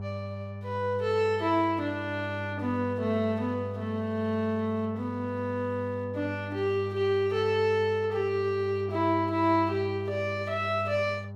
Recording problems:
mains hum; 50 Hz, harmonics up to 800 Hz, SNR 10 dB

